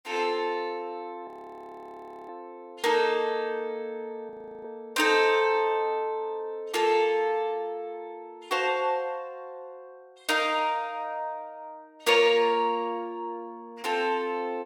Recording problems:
frozen audio; at 1.5 s for 1 s and at 4.5 s

